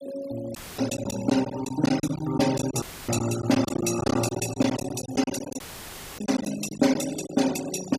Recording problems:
denoising artefacts; signal-to-artefact ratio 11 dB
packet loss; 11% of the sound replaced, filled with silence
dropout; at 0.5 s, at 3 s and at 5.5 s for 0.5 s; filled with static

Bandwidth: 15 kHz